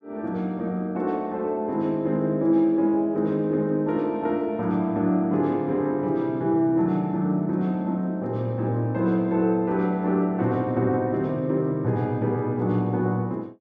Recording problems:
none

